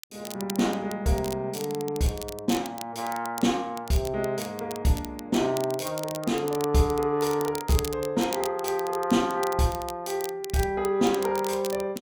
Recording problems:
crackle; vinyl, SNR 13 dB

